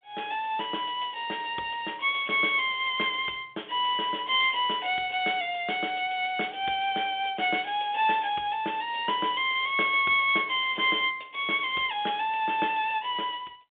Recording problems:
phone line; 240 Hz to 3.6 kHz, G.726

